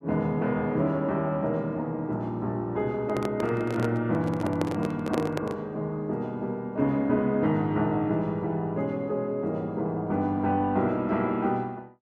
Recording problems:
handling noise; from 3 to 5.5 s; peak +1 dB vs average level

